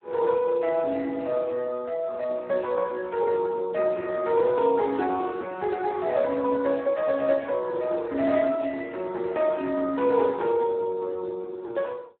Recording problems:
phone line; 300 Hz to 2.5 kHz, Speex

